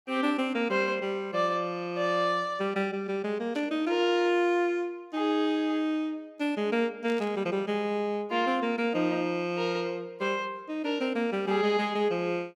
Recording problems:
burst of static; at 3.5 s and at 7 s; peak -13 dB vs average level

